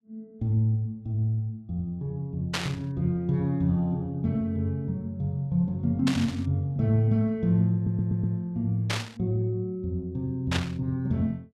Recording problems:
burst of static; 4 times, first at 2.5 s; peak +3 dB vs average level
audio stuttering; at 7.5 s

